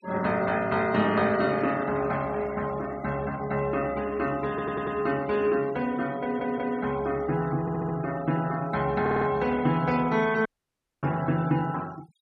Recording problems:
noise reduction artefacts; signal-to-artefact ratio 19 dB
stutter; 4 times, first at 4.5 s
audio cutting out; at 10 s for 0.5 s

